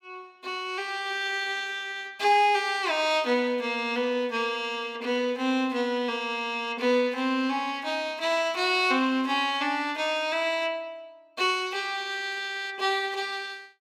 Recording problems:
none

